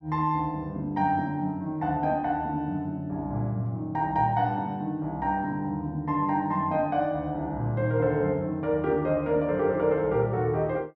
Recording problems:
none

